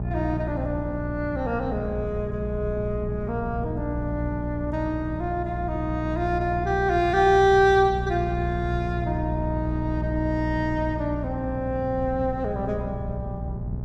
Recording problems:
electrical hum; 60 Hz, harmonics up to 840 Hz, SNR 5 dB
wind noise; below 160 Hz, SNR 13 dB

